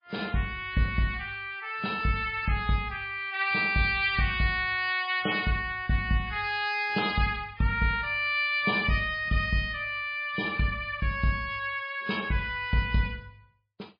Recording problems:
lossy codec; MP3, log-spectral distance 3 dB, nothing above 4.1 kHz

